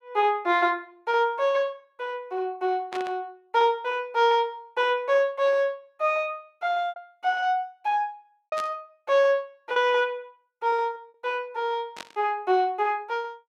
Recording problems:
packet loss; 2% of the sound replaced, filled with repeated pitch periods
static burst; at 3 s, at 8.5 s and at 12 s; peak -7 dB vs average level

